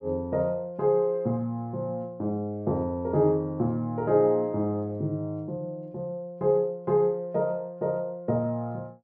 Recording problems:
none

